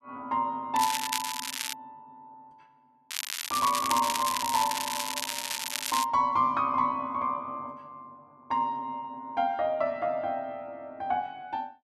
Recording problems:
crackling; at 1 s and from 3 to 6 s; loose cable, SNR 3 dB

